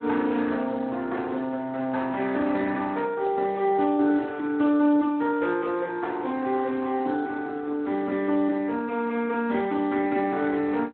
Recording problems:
phone line; 190 Hz to 3.6 kHz, Speex

